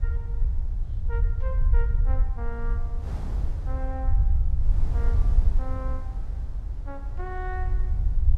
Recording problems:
rumble; below 62 Hz, SNR -12 dB
wind on the microphone; below 140 Hz, SNR 2 dB

